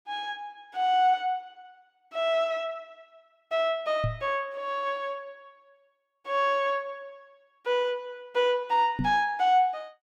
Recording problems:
microphone thump; at 4 s and at 9 s; peak +1 dB vs average level

